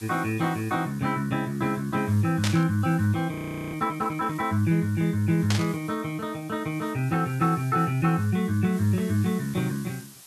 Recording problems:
background hiss; slope +1 dB per octave, SNR 22 dB
burst of static; at 2.5 s and at 5.5 s; peak +2 dB vs average level
frozen audio; at 3.5 s

